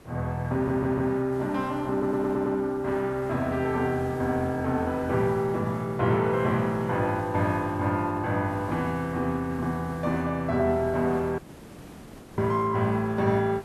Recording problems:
hiss; slope -7 dB per octave, SNR 18 dB
audio stuttering; at 0.5 s and at 2 s
dropout; at 11 s for 1 s

